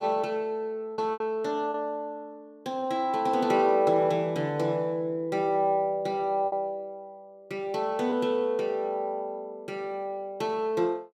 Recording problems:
packet loss; 2% of the sound replaced, filled with repeated pitch periods

